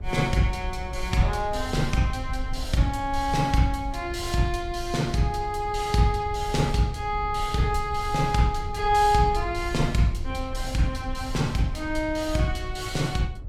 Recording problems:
low-frequency rumble; below 76 Hz, SNR 10 dB

